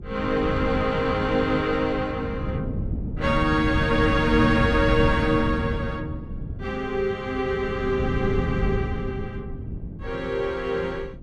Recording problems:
wind on the microphone; below 190 Hz, SNR 5 dB

